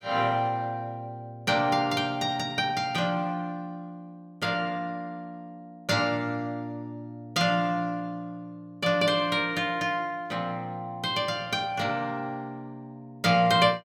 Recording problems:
none

